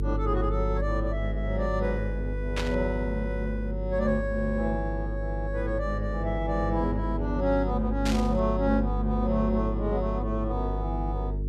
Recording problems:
hum; 50 Hz, harmonics up to 450 Hz, SNR 2 dB
burst of static; at 2.5 s and at 8 s; peak 0 dB vs average level

